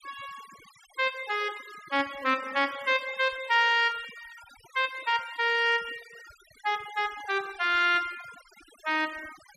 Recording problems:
denoising artefacts; signal-to-artefact ratio 20 dB

